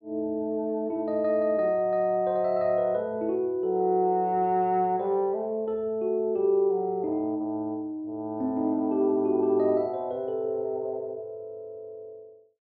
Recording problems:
low-pass filter; nothing above 5.5 kHz

